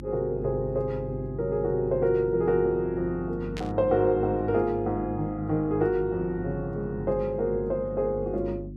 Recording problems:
electrical hum; 50 Hz, harmonics up to 350 Hz, SNR 11 dB
static burst; at 3.5 s; peak -7 dB vs average level

